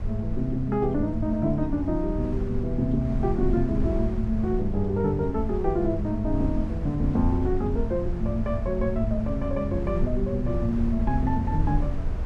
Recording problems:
low-frequency rumble; below 80 Hz, SNR 5 dB

